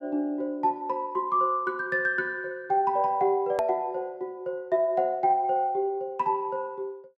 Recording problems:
click at an edit; at 3.5 s

